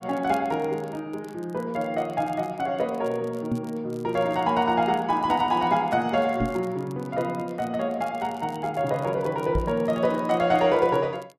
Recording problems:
crackle; vinyl, SNR 29 dB
microphone bump; at 3.5 s, at 6.5 s and at 9.5 s; peak +1 dB vs average level

